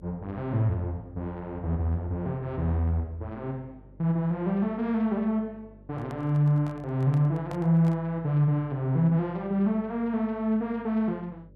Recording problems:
hum; 50 Hz, harmonics up to 600 Hz, SNR 24 dB
handling noise; from 6 to 8 s; peak -9 dB vs average level

